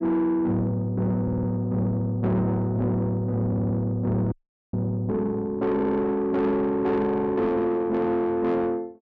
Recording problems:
distortion; soft clipping, signal-to-distortion ratio 11 dB
stutter; at 1 s, at 3.5 s and at 5.5 s
audio cutting out; at 4.5 s

